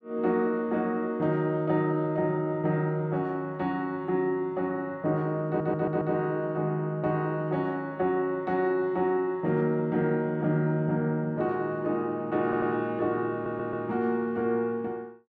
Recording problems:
audio stuttering; at 5.5 s, at 12 s and at 13 s

